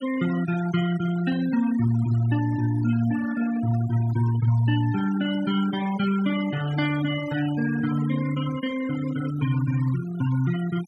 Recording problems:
denoising artefacts; signal-to-artefact ratio 14 dB

